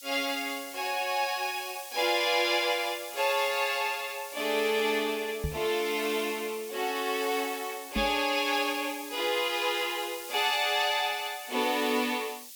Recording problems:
hiss; SNR 13 dB
microphone thump; at 5.5 s and at 8 s; peak -1 dB vs average level

